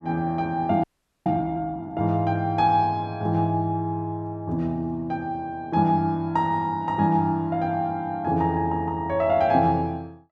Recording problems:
audio freezing; at 1 s

